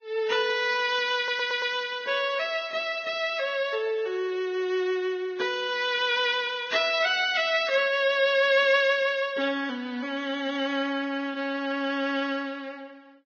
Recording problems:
codec artefacts; Vorbis, log-spectral distance 3 dB, nothing above 6.3 kHz
stutter; at 1 s

